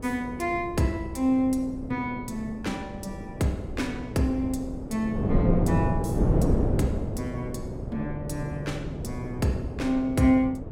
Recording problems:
wind noise; below 340 Hz, SNR 3 dB

